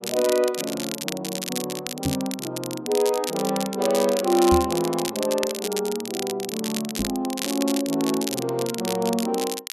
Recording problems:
crackle; vinyl, SNR 6 dB
microphone bump; at 2 s, at 4.5 s and at 7 s; peak +4 dB vs average level

